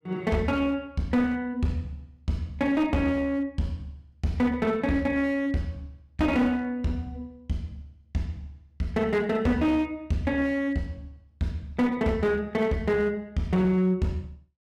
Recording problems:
distortion; hard clipping, uneven, signal-to-distortion ratio 11 dB

